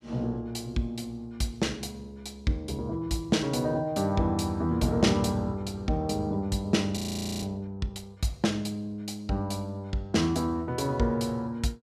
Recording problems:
frozen audio; at 7 s

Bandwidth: 14.5 kHz